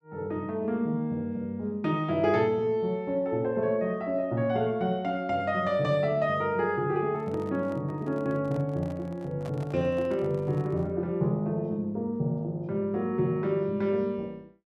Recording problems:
handling noise; from 7 to 11 s; peak -11 dB vs average level

